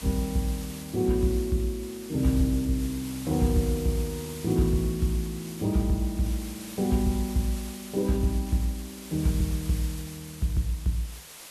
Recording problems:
background hiss; slope 0 dB per octave, SNR 14 dB

